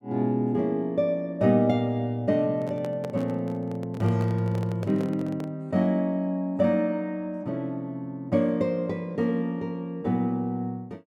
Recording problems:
handling noise; from 2.5 to 5.5 s; peak -6 dB vs average level

